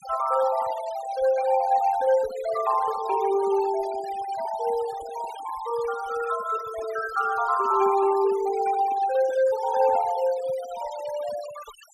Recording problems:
noise reduction artefacts; signal-to-artefact ratio 16 dB

